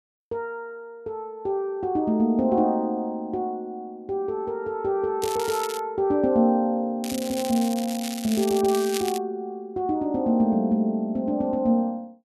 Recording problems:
crackle; at 5 s and from 7 to 9 s; loose cable, SNR 10 dB

